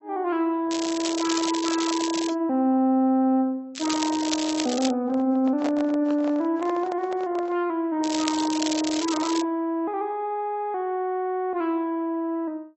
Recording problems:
lossy compression; AAC, log-spectral distance 4 dB
crackling; from 0.5 to 2.5 s, from 3.5 to 5 s and from 8 to 9.5 s; loose cable, SNR 7 dB
handling noise; from 5 to 7.5 s; peak -3 dB vs average level

